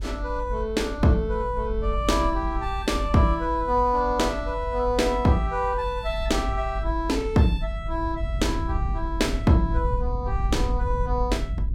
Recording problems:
low-frequency rumble; below 62 Hz, strongest tone 52 Hz, SNR 5 dB

